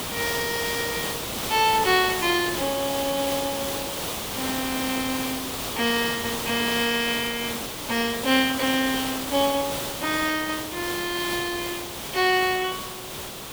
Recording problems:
background hiss; SNR 4 dB

